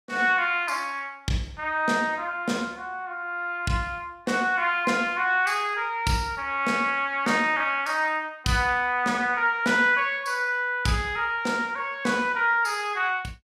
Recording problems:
none

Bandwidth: 16 kHz